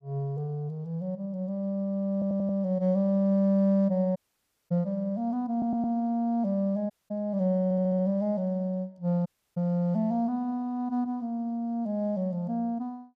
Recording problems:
audio stuttering; at 2 s, at 5.5 s and at 7.5 s
audio cutting out; at 4 s for 0.5 s, at 7 s and at 9.5 s

